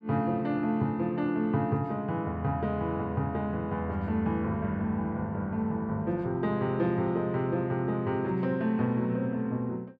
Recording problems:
none

